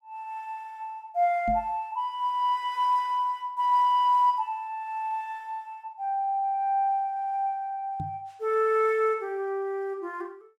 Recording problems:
microphone bump; at 1.5 s and at 8 s; peak -4 dB vs average level

